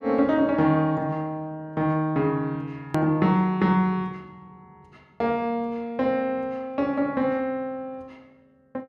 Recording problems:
hard cut with a click; at 3 s

